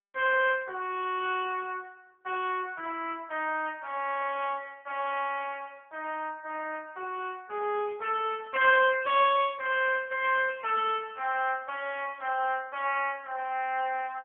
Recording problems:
phone line; 320 Hz to 3.5 kHz, AMR-NB

